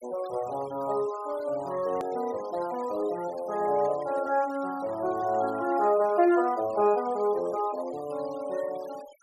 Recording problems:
noise reduction artefacts; signal-to-artefact ratio 21 dB
hard cut with a click; at 2 s

